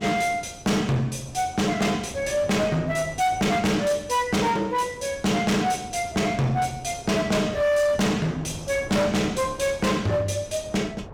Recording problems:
distorted audio; hard clipping, uneven, signal-to-distortion ratio 7 dB
wind noise; below 590 Hz, SNR 17 dB

